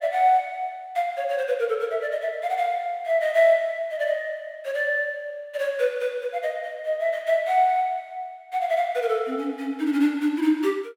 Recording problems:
none

